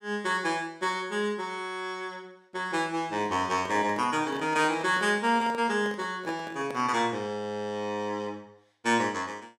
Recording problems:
microphone handling noise; from 3 to 7 s; peak -7 dB vs average level

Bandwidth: 16.5 kHz